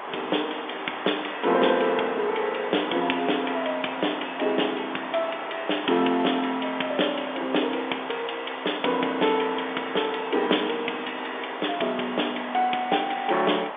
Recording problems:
telephone audio; 220 Hz to 3.6 kHz, G.711
hiss; SNR 9 dB

